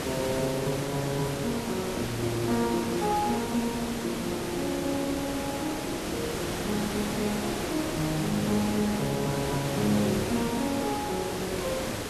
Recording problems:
hiss; slope -5 dB per octave, SNR 2 dB

